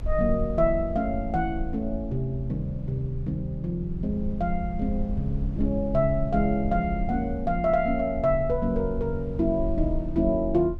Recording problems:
rumble; below 74 Hz, SNR 8 dB

